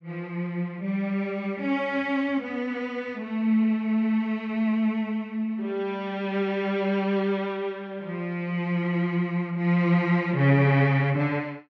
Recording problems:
none

